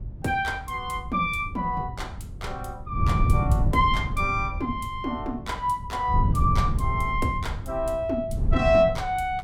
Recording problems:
wind noise; below 120 Hz, SNR 3 dB

